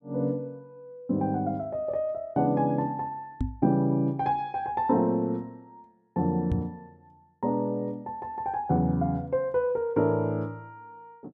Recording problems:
knock on the microphone; at 3.5 s and at 6.5 s; peak +3 dB vs average level

